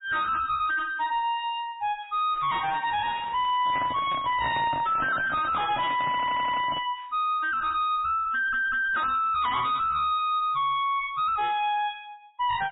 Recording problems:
treble cut off; nothing above 3.4 kHz
codec artefacts; MP3, log-spectral distance 2 dB
distortion; soft clipping, signal-to-distortion ratio 6 dB
crackle; from 2.5 to 4 s; loose cable, SNR 22 dB
microphone handling noise; from 3.5 to 7 s; peak -3 dB vs average level
stutter; at 6 s and at 8.5 s

